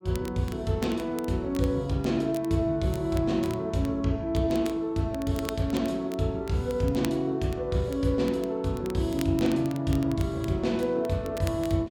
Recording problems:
crackle; vinyl, SNR 20 dB

